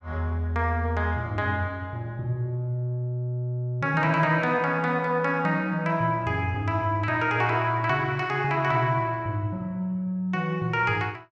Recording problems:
none

